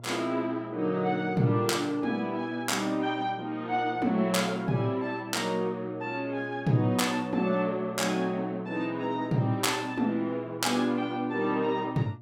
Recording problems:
electrical hum; 60 Hz, harmonics up to 720 Hz, SNR 19 dB

